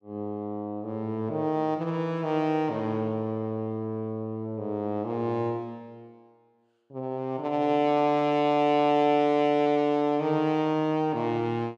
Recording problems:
none

